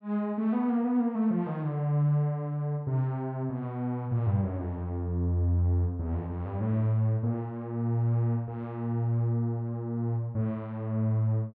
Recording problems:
none

